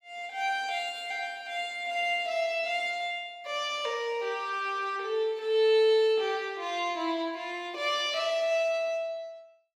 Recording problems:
none

